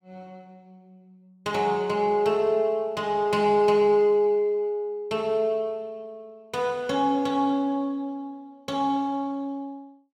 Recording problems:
none

